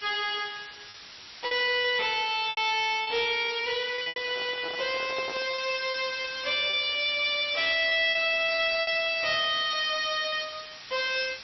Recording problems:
lossy compression; MP3, log-spectral distance 16 dB, nothing above 5.7 kHz
distortion; hard clipping, signal-to-distortion ratio 11 dB
background hiss; slope +2 dB per octave, SNR 16 dB
packet loss; 9% of the sound replaced, filled with repeated pitch periods
handling noise; from 4 to 5.5 s; peak -9 dB vs average level

